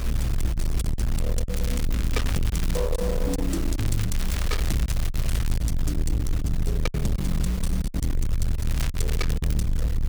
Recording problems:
distortion; hard clipping, signal-to-distortion ratio 7 dB
background hiss; slope -4 dB per octave, SNR 8 dB
rumble; below 64 Hz, strongest tone 22 Hz, SNR -2 dB
packet loss; 6% of the sound replaced, filled with silence
crackle; from 1.5 to 3 s, from 4 to 5.5 s and at 8.5 s; loose cable, SNR 7 dB

